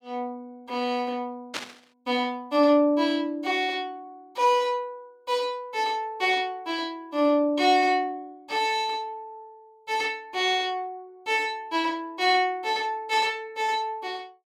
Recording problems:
static burst; at 1.5 s; peak -1 dB vs average level

